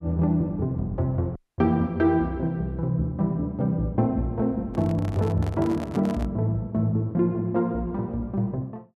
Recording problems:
audio cutting out; at 1.5 s
microphone handling noise; from 4.5 to 6.5 s; peak -8 dB vs average level

